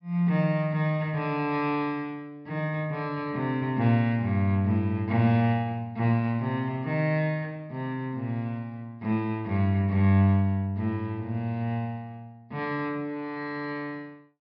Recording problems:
low-pass filter; nothing above 5.5 kHz

